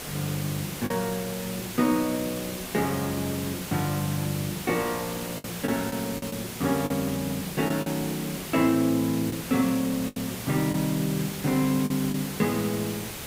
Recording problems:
background hiss; slope -2 dB per octave, SNR 8 dB
lost packets; 4% of the sound replaced, filled with the last packet

